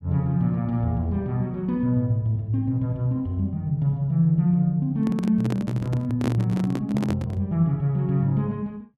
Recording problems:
microphone handling noise; from 5 to 7.5 s; peak 0 dB vs average level

